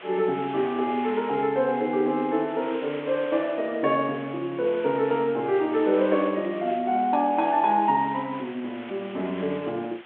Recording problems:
phone line; 260 Hz to 3.3 kHz, G.726
background hiss; SNR 18 dB

